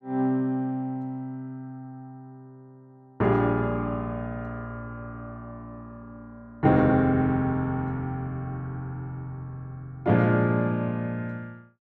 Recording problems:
none

